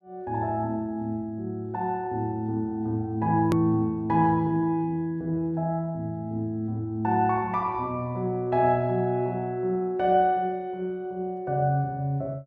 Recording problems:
click at an edit; at 3.5 s

